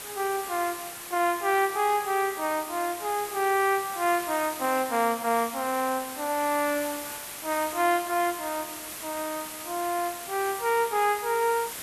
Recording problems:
background hiss; slope -1 dB per octave, SNR 9 dB

